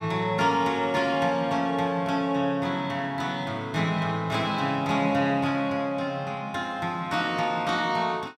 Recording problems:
none

